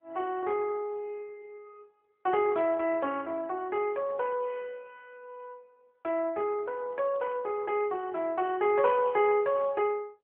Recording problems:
phone line; 110 Hz to 3 kHz, AMR-NB

